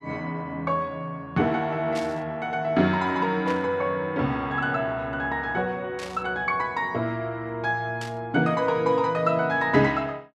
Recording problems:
static burst; 4 times, first at 2 s; peak -7 dB vs average level

